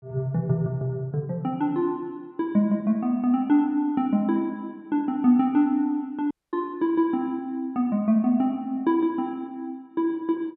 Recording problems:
audio cutting out; at 6.5 s

